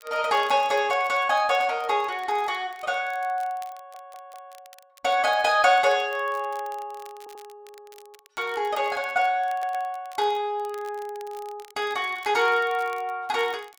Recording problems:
crackle; vinyl, SNR 27 dB
audio stuttering; at 4 s, at 7 s and at 9.5 s

